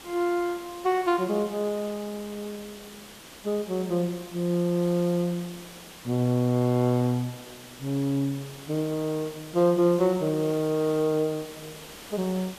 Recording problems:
background hiss; slope -2 dB per octave, SNR 17 dB

